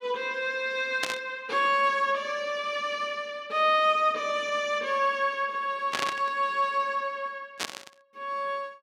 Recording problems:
burst of static; at 1 s, at 6 s and at 7.5 s; peak +2 dB vs average level

